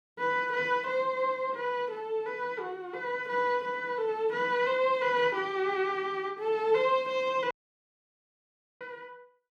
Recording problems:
audio cutting out; at 7.5 s for 1.5 s

